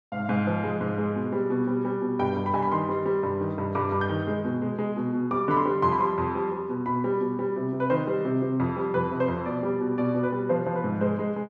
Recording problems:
low-pass filter; nothing above 8 kHz

